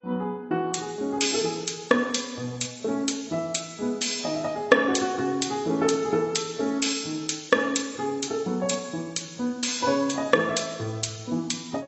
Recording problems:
lossy compression; AAC, log-spectral distance 8 dB, nothing above 7.8 kHz

